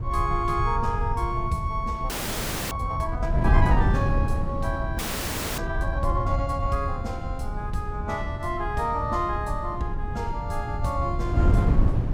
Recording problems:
low-frequency rumble; below 92 Hz, SNR 4 dB
wind noise; below 130 Hz, SNR 0 dB
audio freezing; at 2 s for 0.5 s and at 5 s for 0.5 s

